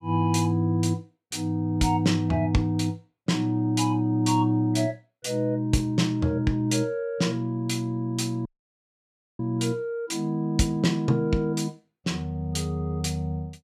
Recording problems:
dropout; at 8.5 s for 1 s

